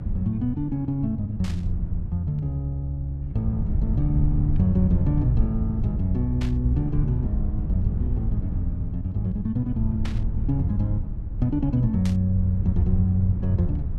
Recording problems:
low-frequency rumble; below 100 Hz, SNR 3 dB
static burst; 4 times, first at 1.5 s; peak -8 dB vs average level

